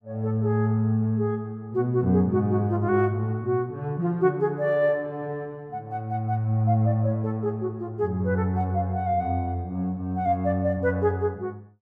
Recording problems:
none

